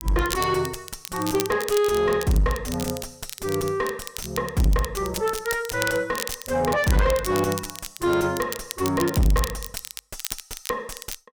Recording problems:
distortion; soft clipping, signal-to-distortion ratio 6 dB
crackle; vinyl, SNR 10 dB

